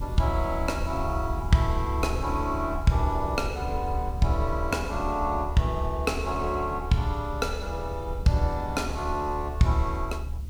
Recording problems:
background hiss; SNR 28 dB
low-frequency rumble; below 74 Hz, SNR 7 dB

